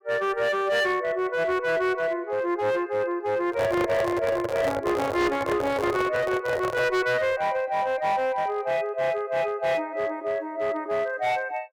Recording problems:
distorted audio; hard clipping, uneven, signal-to-distortion ratio 11 dB
microphone handling noise; from 3.5 to 7 s; peak +1 dB vs average level

